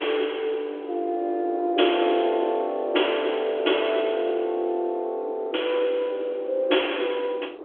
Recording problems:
phone line; 300 Hz to 3.4 kHz, G.726
wind noise; below 510 Hz, SNR 16 dB

